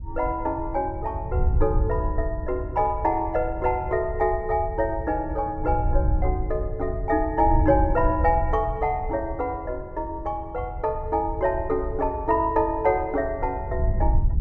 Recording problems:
wind noise; below 82 Hz, SNR 5 dB

